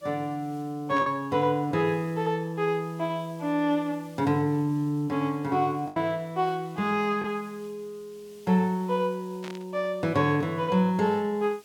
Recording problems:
background hiss; SNR 28 dB
lost packets; 1.2% of the sound replaced, filled with the last packet
burst of static; at 1 s and at 9.5 s; peak -10 dB vs average level

